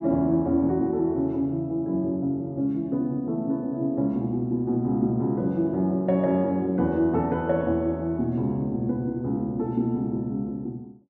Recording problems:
none

